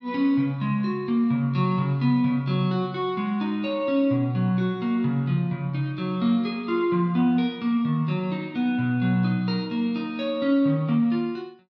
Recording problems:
none

